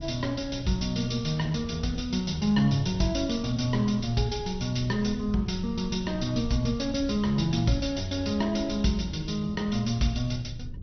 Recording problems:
codec artefacts; Vorbis, then MP2, log-spectral distance 5 dB, nothing above 6 kHz
rumble; below 110 Hz, SNR 14 dB

